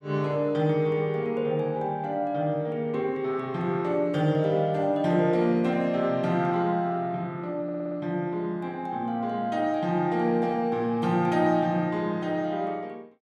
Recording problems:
stutter; at 7.5 s

